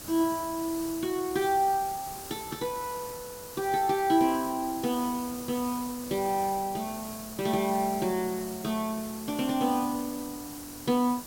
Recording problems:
background hiss; SNR 11 dB

